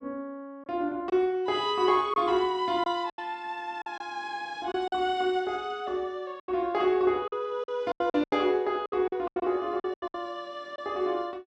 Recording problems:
packet loss; 9% of the sound replaced, filled with silence

